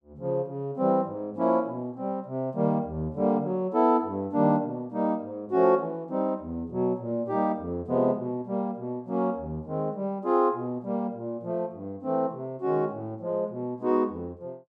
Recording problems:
none

